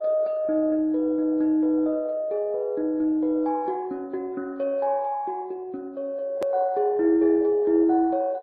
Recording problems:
lossy compression; MP2, then MP3, log-spectral distance 2 dB, nothing above 13.3 kHz
click at an edit; at 6.5 s

